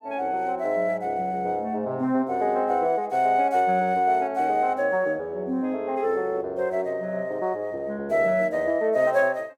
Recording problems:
none

